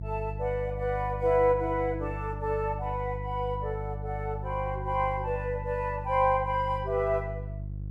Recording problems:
hum; 50 Hz, harmonics up to 350 Hz, SNR 8 dB

